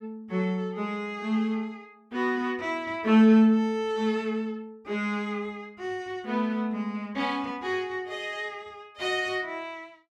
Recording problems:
none

